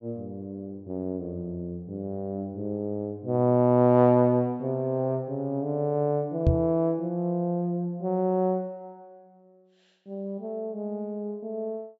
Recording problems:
treble cut off; nothing above 8 kHz
microphone thump; at 6.5 s; peak +8 dB vs average level

